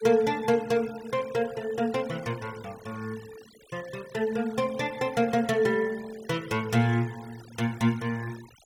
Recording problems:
denoising artefacts; signal-to-artefact ratio 20 dB

